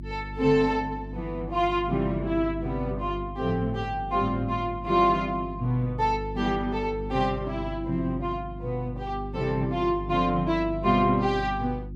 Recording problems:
hum; 50 Hz, harmonics up to 350 Hz, SNR 11 dB

